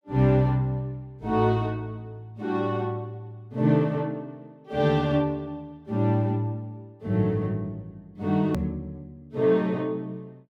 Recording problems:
edit click; at 8.5 s

